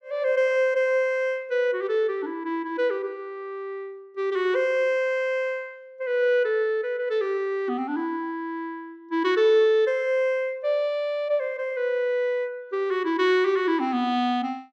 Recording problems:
none

